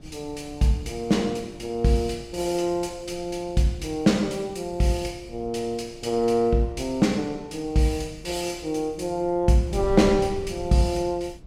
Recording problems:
wind on the microphone; below 160 Hz, SNR 17 dB

